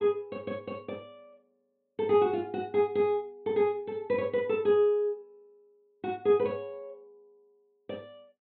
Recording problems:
treble missing; nothing above 4 kHz

